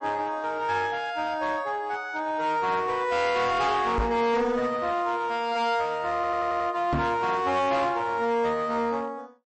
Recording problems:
codec artefacts; MP3, log-spectral distance 2 dB, nothing above 8.2 kHz
distorted audio; hard clipping, uneven, signal-to-distortion ratio 10 dB
knock on the microphone; at 4 s and at 7 s; peak +2 dB vs average level
audio stuttering; at 6 s

